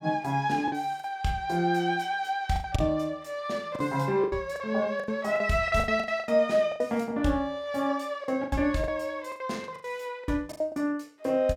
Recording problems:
packet loss; 12% of the sound replaced, filled with the last packet

